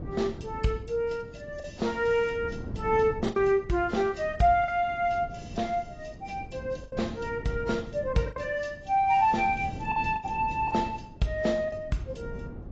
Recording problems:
lossy codec; AAC, log-spectral distance 2 dB, nothing above 7.3 kHz
wind on the microphone; below 250 Hz, SNR 14 dB
lost packets; 4% of the sound replaced, filled with the last packet

